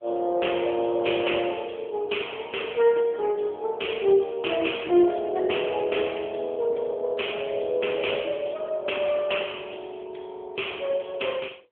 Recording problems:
phone line; 280 Hz to 3.4 kHz, AMR-NB

